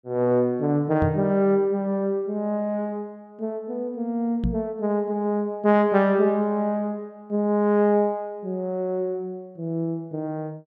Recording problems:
knock on the microphone; at 1 s and at 4.5 s; peak +2 dB vs average level

